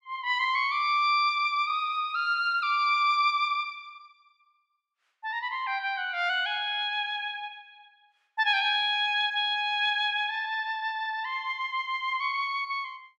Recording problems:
none

